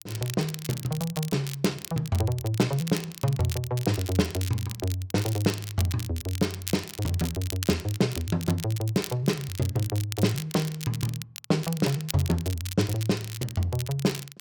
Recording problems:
crackle; vinyl, SNR 11 dB

